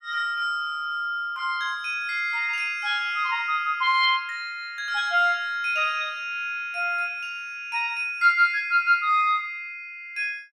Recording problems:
none

